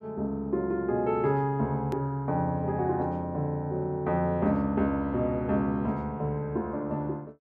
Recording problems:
hard cut with a click; at 2 s

